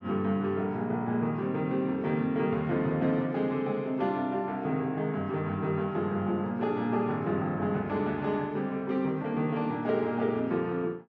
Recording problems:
none

